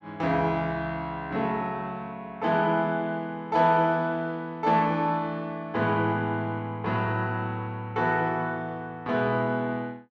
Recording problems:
none

